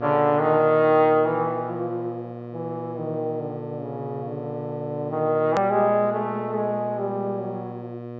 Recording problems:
treble missing; nothing above 8 kHz
electrical hum; 60 Hz, harmonics up to 1.3 kHz, SNR 12 dB
edit click; at 5.5 s

